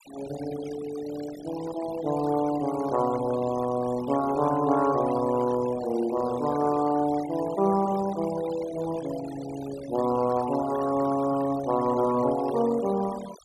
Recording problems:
noise reduction artefacts; signal-to-artefact ratio 15 dB

